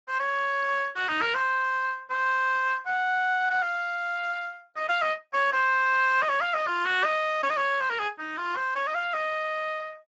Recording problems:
lossy compression; Speex, log-spectral distance 4 dB, nothing above 7.3 kHz

